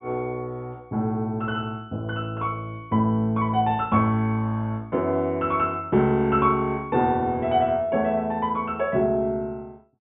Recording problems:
treble missing; nothing above 3.7 kHz

